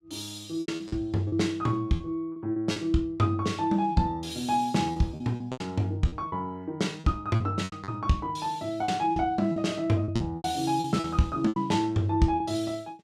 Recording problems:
lost packets; 11% of the sound replaced, filled with repeated pitch periods

